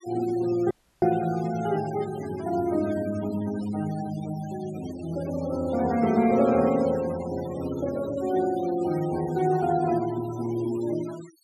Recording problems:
denoising artefacts; signal-to-artefact ratio 17 dB
audio cutting out; at 0.5 s

